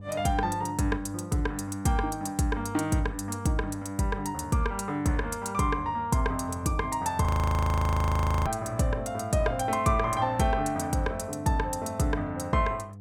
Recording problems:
hum; 50 Hz, harmonics up to 500 Hz, SNR 17 dB
frozen audio; at 7.5 s for 1 s

